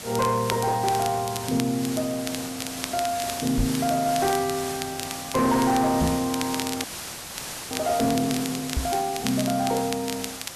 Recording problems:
distortion; soft clipping, signal-to-distortion ratio 11 dB
background hiss; slope -1 dB per octave, SNR 8 dB
crackling; vinyl, SNR 11 dB
microphone thump; at 3.5 s, at 6 s and at 9 s; peak +4 dB vs average level
audio freezing; at 7 s for 1 s

